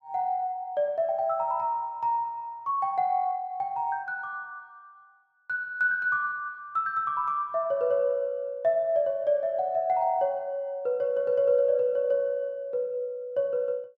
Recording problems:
none

